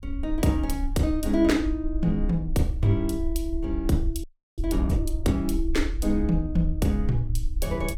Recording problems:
low-frequency rumble; below 58 Hz, SNR 5 dB
audio freezing; at 4 s

